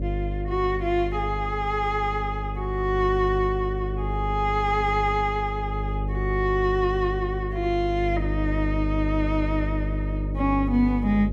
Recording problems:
hum; 50 Hz, harmonics up to 550 Hz, SNR 4 dB

